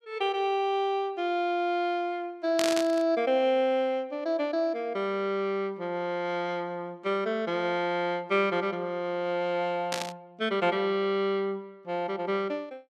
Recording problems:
burst of static; at 2.5 s and at 10 s; peak +2 dB vs average level

